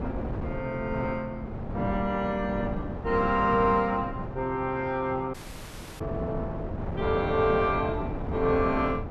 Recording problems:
wind noise; below 420 Hz, SNR 7 dB
dropout; at 5.5 s for 0.5 s

